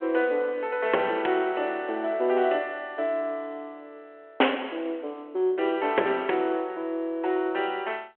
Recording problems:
telephone audio; 300 Hz to 3.3 kHz, G.726

